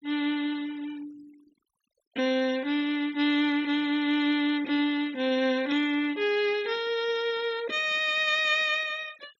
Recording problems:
noise reduction artefacts; signal-to-artefact ratio 23 dB

